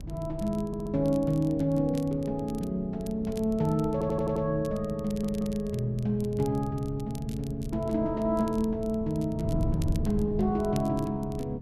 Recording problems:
wind noise; below 170 Hz, SNR 10 dB
crackling; vinyl, SNR 23 dB
stutter; at 0.5 s, at 4 s and at 5 s

